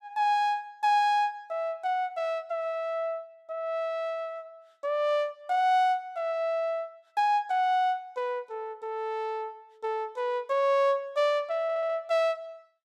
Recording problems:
stutter; at 12 s

